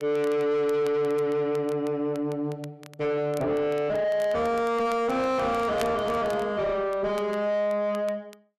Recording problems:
distorted audio; soft clipping, signal-to-distortion ratio 5 dB
crackling; vinyl, SNR 23 dB

